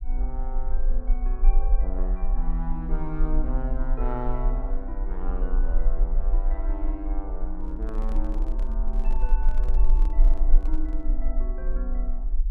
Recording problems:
low-frequency rumble; below 36 Hz, strongest tone 20 Hz, SNR -9 dB
microphone handling noise; from 7.5 to 11 s; peak -3 dB vs average level

